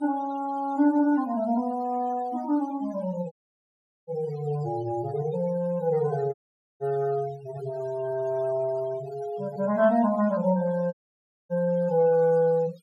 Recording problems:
denoising artefacts; signal-to-artefact ratio 20 dB
dropout; at 3.5 s for 1 s, at 6.5 s and at 11 s for 0.5 s

